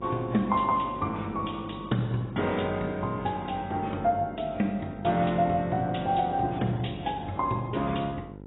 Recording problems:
lossy compression; AAC, log-spectral distance 4 dB, nothing above 3.8 kHz
electrical hum; 50 Hz, harmonics up to 1.1 kHz, SNR 15 dB

